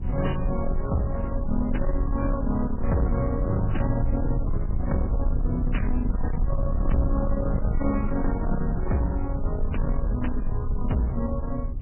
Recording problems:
codec artefacts; MP3, log-spectral distance 3 dB, nothing above 3 kHz
distortion; soft clipping, signal-to-distortion ratio 11 dB
low-frequency rumble; below 72 Hz, SNR 1 dB

